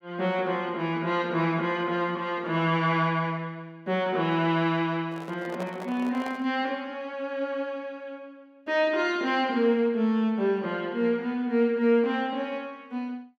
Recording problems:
microphone handling noise; from 5 to 6.5 s; peak -7 dB vs average level

